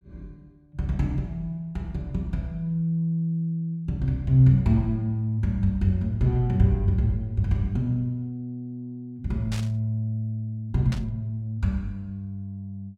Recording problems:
burst of static; at 9.5 s and at 11 s; peak -8 dB vs average level

